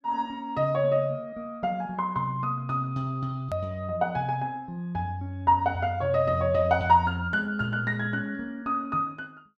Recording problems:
edit click; at 3.5 s

